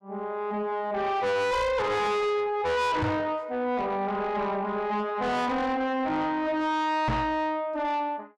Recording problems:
distortion; soft clipping, signal-to-distortion ratio 6 dB
microphone bump; at 3 s and at 7 s; peak +4 dB vs average level

